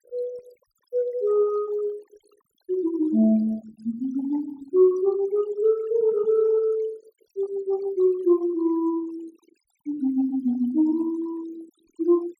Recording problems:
noise reduction artefacts; signal-to-artefact ratio 26 dB

